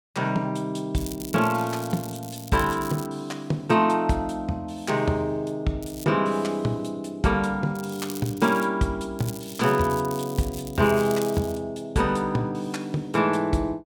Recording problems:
crackling; 4 times, first at 1 s; loose cable, SNR 15 dB

